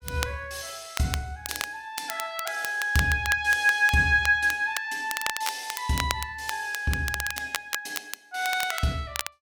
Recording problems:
crackle; vinyl, SNR 8 dB

